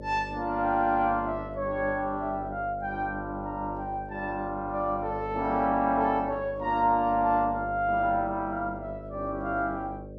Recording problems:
electrical hum; 50 Hz, harmonics up to 600 Hz, SNR 13 dB

